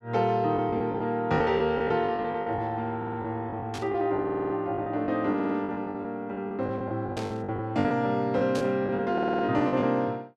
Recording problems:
lost packets; 13% of the sound replaced, filled with the last packet
stutter; 4 times, first at 3 s
burst of static; at 3.5 s, at 7 s and at 8.5 s; peak -7 dB vs average level

